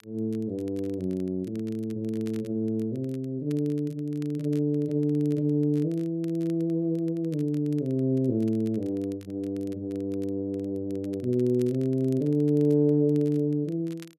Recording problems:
crackle; vinyl, SNR 29 dB

